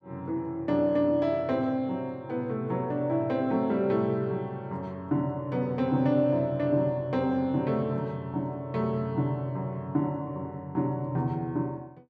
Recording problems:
none

